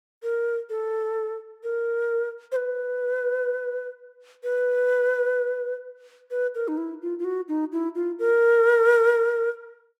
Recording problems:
none

